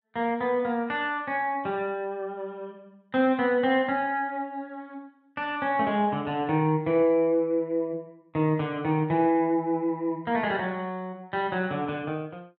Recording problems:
none

